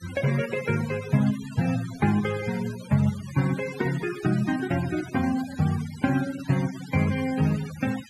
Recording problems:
noise reduction artefacts; signal-to-artefact ratio 14 dB

